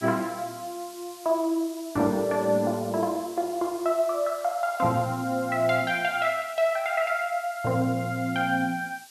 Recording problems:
background hiss; slope +2 dB per octave, SNR 19 dB

